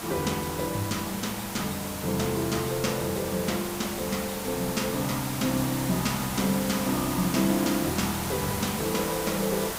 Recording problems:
hiss; SNR 4 dB

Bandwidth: 15.5 kHz